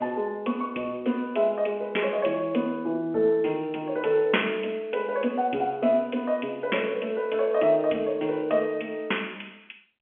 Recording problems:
phone line; 220 Hz to 3.4 kHz, G.711

